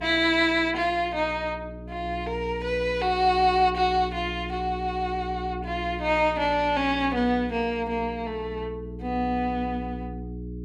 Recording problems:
electrical hum; 60 Hz, harmonics up to 420 Hz, SNR 12 dB

